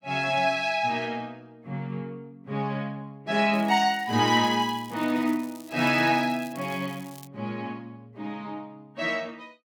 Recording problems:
crackling; from 3.5 to 7.5 s; loose cable, SNR 22 dB

